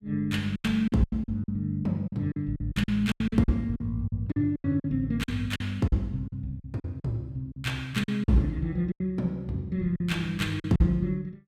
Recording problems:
packet loss; 13% of the sound replaced, filled with silence

